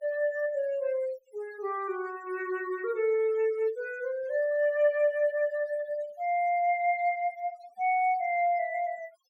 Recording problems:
denoising artefacts; signal-to-artefact ratio 23 dB

